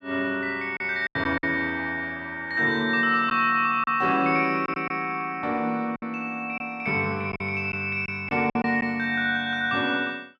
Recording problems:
lost packets; 5% of the sound replaced, filled with silence

